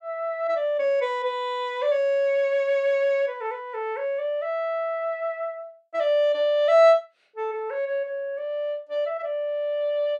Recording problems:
none

